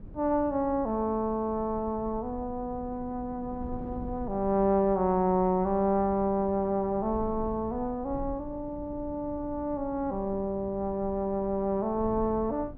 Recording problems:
wind noise; below 180 Hz, SNR 15 dB

